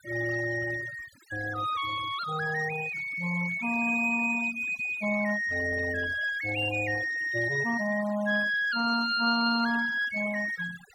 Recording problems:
noise reduction artefacts; signal-to-artefact ratio 17 dB

